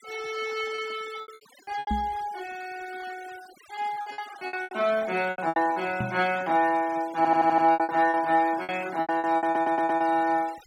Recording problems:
denoising artefacts; signal-to-artefact ratio 20 dB
lost packets; 13% of the sound replaced, filled with repeated pitch periods
microphone thump; at 2 s and at 6 s; peak 0 dB vs average level
stutter; at 7 s and at 9.5 s

